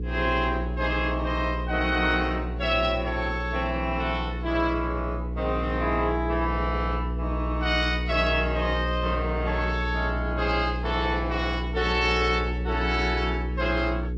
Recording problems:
lossy codec; MP3, then G.722, log-spectral distance 2 dB
hum; 60 Hz, harmonics up to 480 Hz, SNR 4 dB

